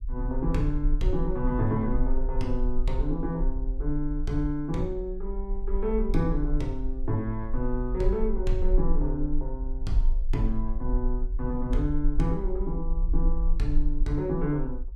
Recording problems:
low-frequency rumble; below 40 Hz, SNR 1 dB

